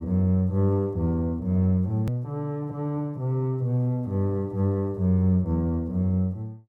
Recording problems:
hard cut with a click; at 2 s

